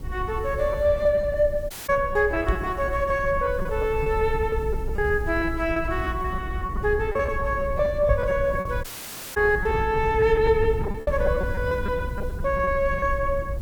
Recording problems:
hiss; slope +3 dB per octave, SNR 30 dB
rumble; below 96 Hz, SNR 8 dB
packet loss; 13% of the sound replaced, filled with repeated pitch periods
dropout; at 1.5 s and at 9 s for 0.5 s
microphone bump; at 2.5 s and at 8 s; peak +4 dB vs average level

